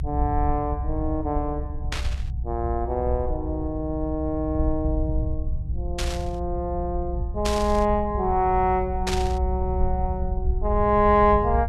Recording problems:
rumble; below 70 Hz, SNR 4 dB
static burst; 4 times, first at 2 s; peak +1 dB vs average level

